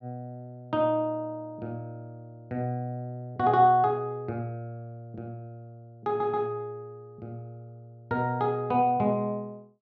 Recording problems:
stutter; at 6 s

